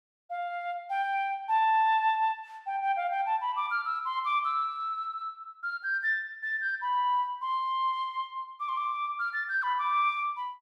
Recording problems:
none

